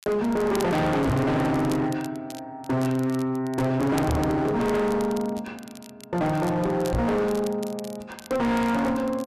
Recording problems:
distorted audio; hard clipping, signal-to-distortion ratio 6 dB
crackle; vinyl, SNR 20 dB
knock on the microphone; at 1 s, at 4 s and at 7 s; peak +6 dB vs average level

